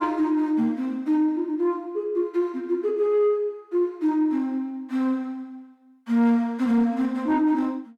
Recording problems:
distortion; soft clipping, signal-to-distortion ratio 12 dB

